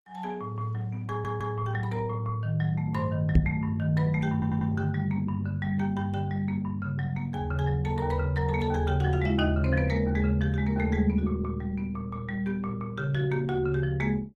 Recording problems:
lossy compression; Opus, log-spectral distance 2 dB, nothing above 15.6 kHz
audio stuttering; at 1 s and at 4.5 s
microphone bump; at 3.5 s; peak +9 dB vs average level

